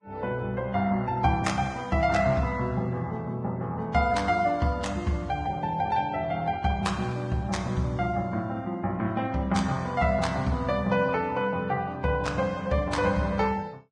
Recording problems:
lossy codec; Vorbis, log-spectral distance 2 dB, nothing above 10.1 kHz

